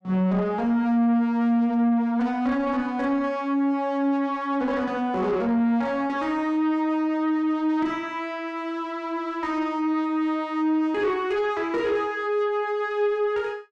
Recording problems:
distortion; soft clipping, signal-to-distortion ratio 10 dB

